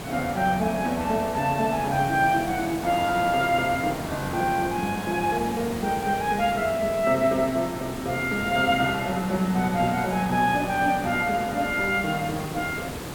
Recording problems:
background hiss; slope -5 dB per octave, SNR 10 dB

